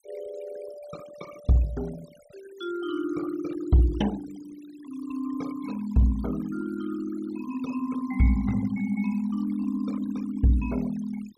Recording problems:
denoising artefacts; signal-to-artefact ratio 19 dB

